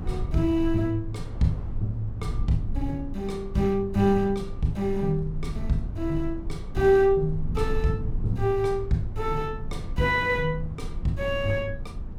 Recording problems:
low-frequency rumble; below 66 Hz, strongest tone 22 Hz, SNR 10 dB
wind on the microphone; below 270 Hz, SNR 18 dB

